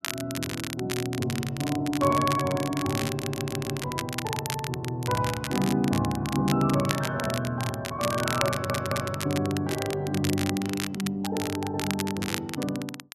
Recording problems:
crackle; vinyl, SNR 7 dB
stutter; at 3 s and at 8.5 s

